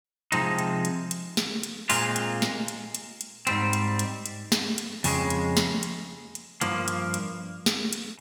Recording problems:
none

